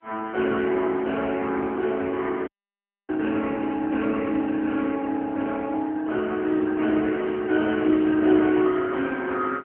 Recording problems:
telephone audio; 240 Hz to 3.4 kHz, AMR-NB
dropout; at 2.5 s for 0.5 s

